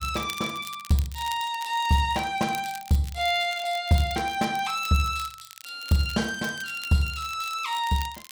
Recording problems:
crackle; vinyl, SNR 17 dB

